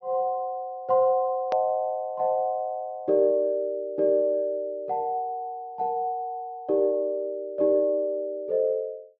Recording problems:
low-pass filter; nothing above 6.1 kHz
hard cut with a click; at 1.5 s

